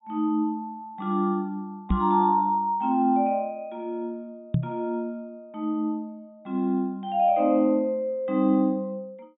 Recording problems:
low-pass filter; nothing above 4 kHz
microphone thump; at 2 s and at 4.5 s; peak +5 dB vs average level

